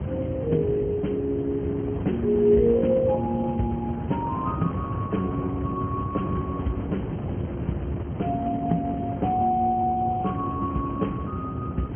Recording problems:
low-pass filter; nothing above 3.2 kHz
lossy compression; Speex, log-spectral distance 3 dB
low-frequency rumble; below 270 Hz, SNR 8 dB
wind noise; below 380 Hz, SNR 9 dB

